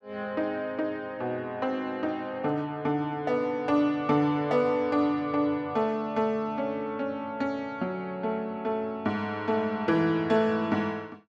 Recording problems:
none

